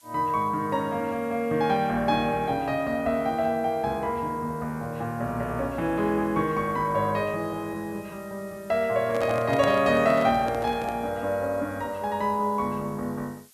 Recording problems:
background hiss; slope +3 dB per octave, SNR 27 dB
microphone handling noise; from 9 to 11 s; peak -1 dB vs average level

